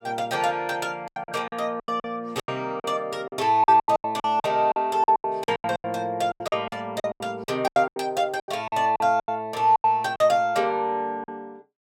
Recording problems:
packet loss; 17% of the sound replaced, filled with silence

